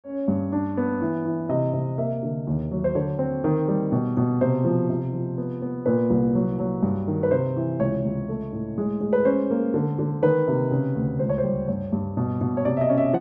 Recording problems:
none

